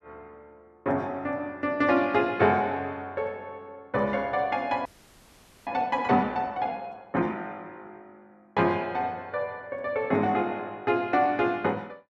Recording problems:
audio freezing; at 5 s for 1 s

